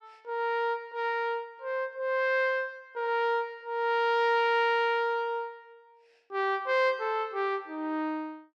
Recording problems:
none

